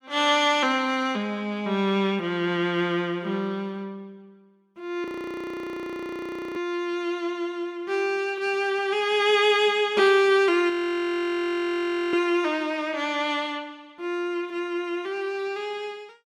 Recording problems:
audio freezing; at 5 s for 1.5 s and at 11 s for 1.5 s

